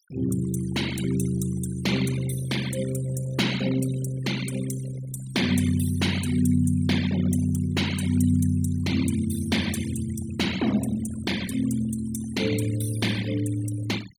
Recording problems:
noise reduction artefacts; signal-to-artefact ratio 13 dB

